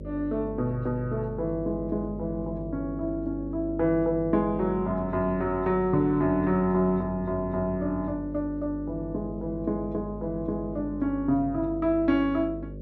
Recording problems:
hum; 50 Hz, harmonics up to 600 Hz, SNR 11 dB

